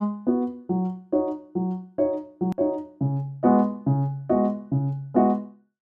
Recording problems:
edit click; at 2.5 s

